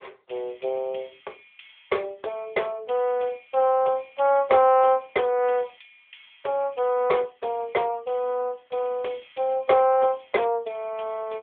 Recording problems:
telephone audio; 340 Hz to 3.4 kHz, AMR-NB

